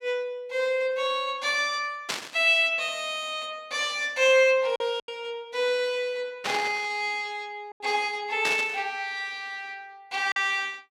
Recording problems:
packet loss; 2% of the sound replaced, filled with silence
burst of static; at 2 s, at 6.5 s and at 8.5 s; peak +2 dB vs average level

